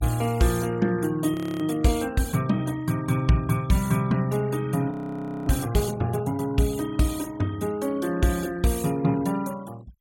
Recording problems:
noise reduction artefacts; signal-to-artefact ratio 20 dB
frozen audio; at 1.5 s and at 5 s for 0.5 s

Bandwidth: 16 kHz